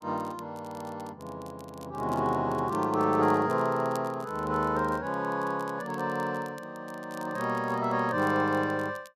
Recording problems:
crackle; vinyl, SNR 25 dB

